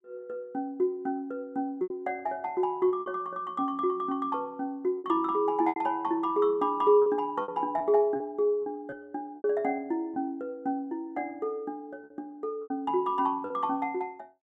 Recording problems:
packet loss; 6% of the sound replaced, filled with repeated pitch periods

